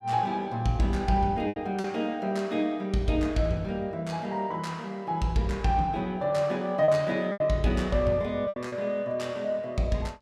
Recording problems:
lost packets; 4% of the sound replaced, filled with repeated pitch periods

